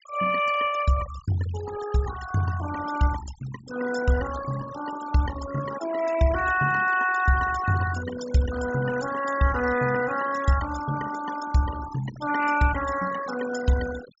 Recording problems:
treble cut off; nothing above 8 kHz
denoising artefacts; signal-to-artefact ratio 12 dB

